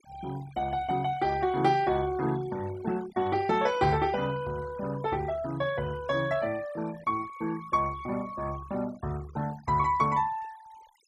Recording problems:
denoising artefacts; signal-to-artefact ratio 20 dB

